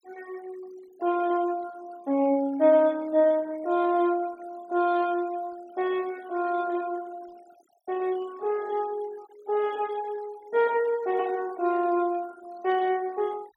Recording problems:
noise reduction artefacts; signal-to-artefact ratio 24 dB

